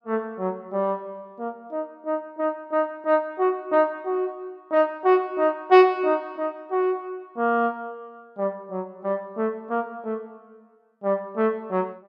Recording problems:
none

